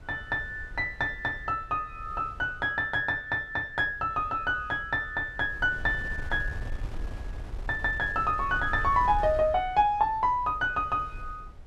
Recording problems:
wind noise; below 78 Hz, SNR 14 dB

